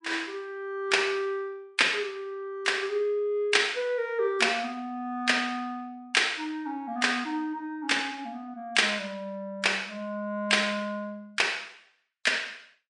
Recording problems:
codec artefacts; MP3, log-spectral distance 2 dB, nothing above 8.7 kHz

